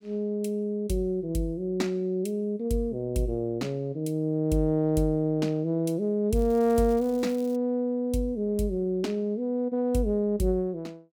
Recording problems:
crackling; from 6.5 to 7.5 s; loose cable, SNR 24 dB

